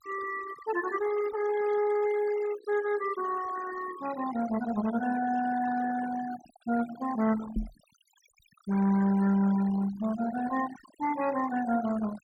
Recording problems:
noise reduction artefacts; signal-to-artefact ratio 14 dB
knock on the microphone; at 7.5 s; peak +2 dB vs average level

